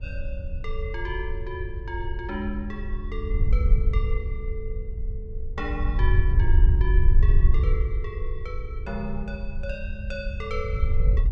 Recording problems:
wind on the microphone; below 66 Hz, SNR -8 dB

